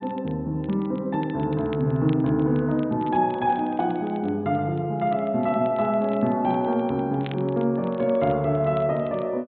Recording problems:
treble cut off; nothing above 4 kHz
crackle; vinyl, SNR 27 dB

